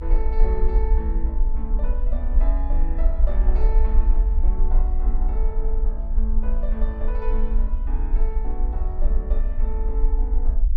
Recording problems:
rumble; below 46 Hz, strongest tone 24 Hz, SNR -11 dB

